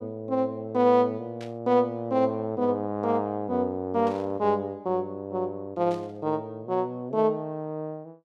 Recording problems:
static burst; at 1.5 s, at 4 s and at 6 s; peak -15 dB vs average level

